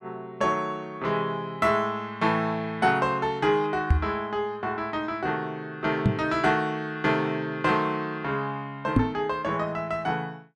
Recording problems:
microphone bump; at 4 s, at 6 s and at 9 s; peak +9 dB vs average level

